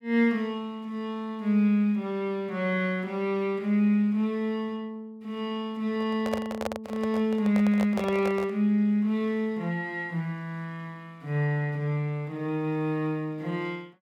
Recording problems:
handling noise; from 6 to 8.5 s; peak +1 dB vs average level

